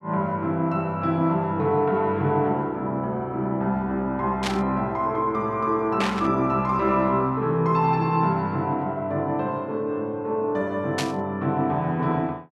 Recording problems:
static burst; at 4.5 s, at 6 s and at 11 s; peak +1 dB vs average level

